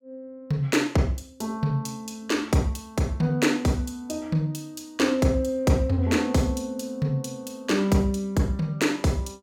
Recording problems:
none

